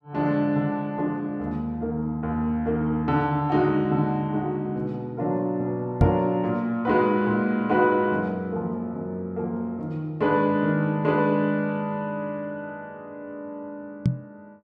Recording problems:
microphone thump; at 6 s and at 14 s; peak +8 dB vs average level

